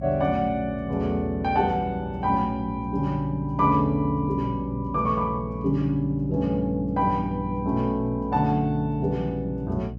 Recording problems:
electrical hum; 60 Hz, harmonics up to 480 Hz, SNR 11 dB

